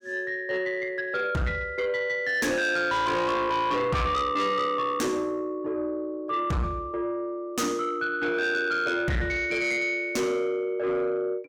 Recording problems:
distortion; soft clipping, signal-to-distortion ratio 7 dB

